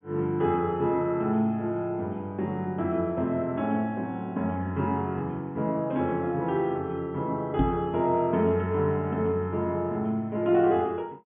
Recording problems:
treble missing; nothing above 3.6 kHz
microphone thump; at 7.5 s; peak +6 dB vs average level

